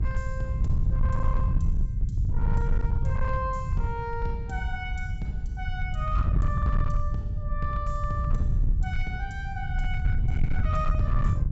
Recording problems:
treble missing; nothing above 8 kHz
distortion; hard clipping, signal-to-distortion ratio 11 dB
electrical hum; 60 Hz, harmonics up to 480 Hz, SNR 18 dB
rumble; below 90 Hz, SNR -5 dB

